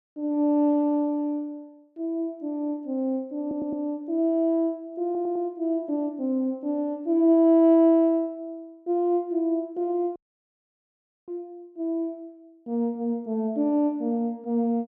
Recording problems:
stutter; at 3.5 s and at 5 s
dropout; at 10 s for 1 s

